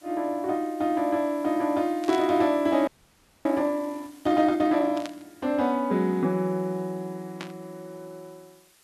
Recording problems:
hiss; slope 0 dB per octave, SNR 28 dB
burst of static; at 2 s, at 5 s and at 7.5 s; peak -8 dB vs average level
frozen audio; at 3 s for 0.5 s

